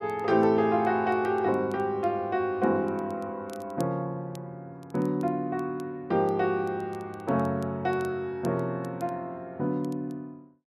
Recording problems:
crackle; vinyl, SNR 29 dB

